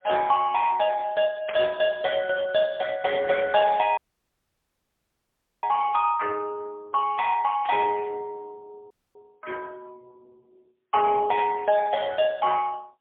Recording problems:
phone line; 370 Hz to 2.9 kHz, AMR-NB, then MP3
burst of static; 4 times, first at 1.5 s; peak -6 dB vs average level
audio cutting out; at 4 s for 1.5 s and at 9 s

